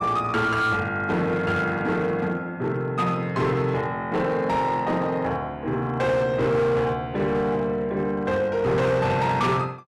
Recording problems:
distorted audio; hard clipping, signal-to-distortion ratio 11 dB

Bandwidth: 12 kHz